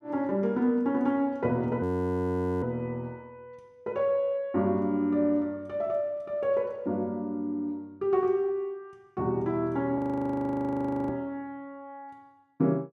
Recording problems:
frozen audio; at 2 s for 1 s and at 10 s for 1 s

